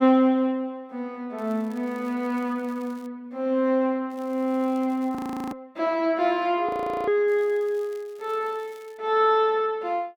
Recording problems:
crackling; from 1.5 to 3 s, from 4 to 5 s and from 7.5 to 9 s; loose cable, SNR 30 dB
frozen audio; at 5 s and at 6.5 s

